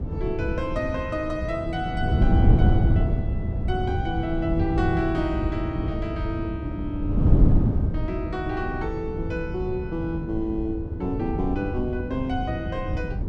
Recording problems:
wind on the microphone; below 150 Hz, SNR -2 dB

